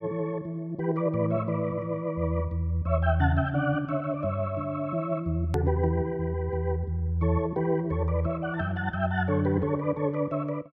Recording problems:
click at an edit; at 5.5 s

